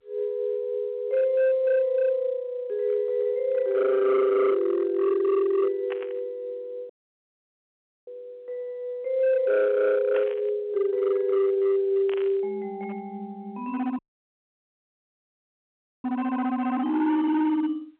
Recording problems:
telephone audio; 990 Hz to 2.7 kHz, G.711
distortion; hard clipping, signal-to-distortion ratio 11 dB
static burst; at 6 s, at 10 s and at 12 s; peak -9 dB vs average level
audio cutting out; at 7 s for 1 s and at 14 s for 2 s

